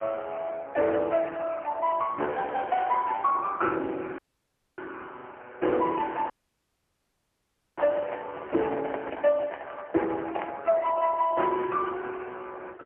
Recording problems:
telephone audio; 280 Hz to 3 kHz, AMR-NB, then MP3
dropout; at 4 s for 0.5 s and at 6.5 s for 1.5 s
microphone handling noise; from 6 to 11 s; peak -3 dB vs average level

